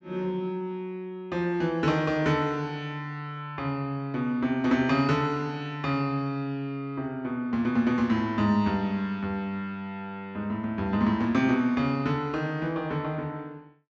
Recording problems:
treble cut off; nothing above 8 kHz

